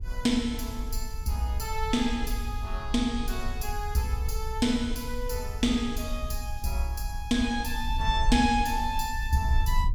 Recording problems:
wind noise; below 62 Hz, SNR 5 dB

